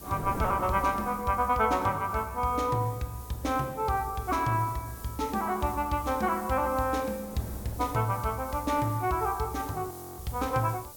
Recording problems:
background hiss; SNR 17 dB
wind on the microphone; below 500 Hz, SNR 17 dB
frozen audio; at 10 s

